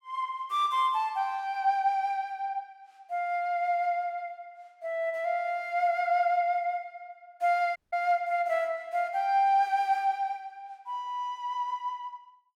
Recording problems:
dropout; at 8 s

